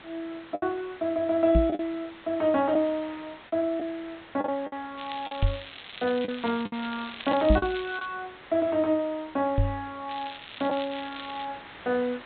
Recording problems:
treble missing; nothing above 4 kHz
hiss; SNR 18 dB
lost packets; 4% of the sound replaced, filled with the last packet
microphone thump; 4 times, first at 1.5 s; peak +9 dB vs average level
crackle; from 5 to 8 s and from 10 to 11 s; loose cable, SNR 13 dB

